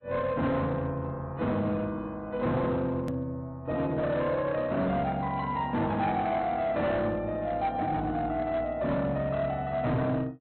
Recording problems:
low-pass filter; nothing above 4.1 kHz
lossy codec; AAC, log-spectral distance 2 dB
distortion; hard clipping, signal-to-distortion ratio 11 dB
hard cut with a click; at 3 s

